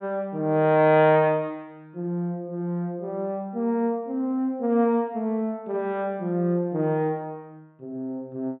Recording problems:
treble missing; nothing above 4 kHz

